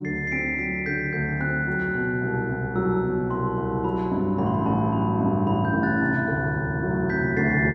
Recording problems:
none

